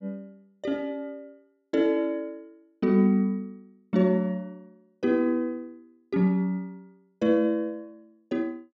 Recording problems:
none

